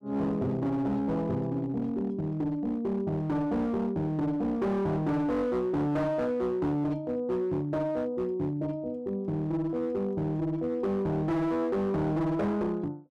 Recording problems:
distorted audio; hard clipping, uneven, signal-to-distortion ratio 10 dB

